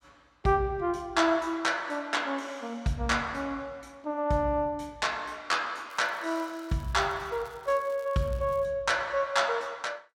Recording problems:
crackle; from 6 to 8.5 s; loose cable, SNR 27 dB

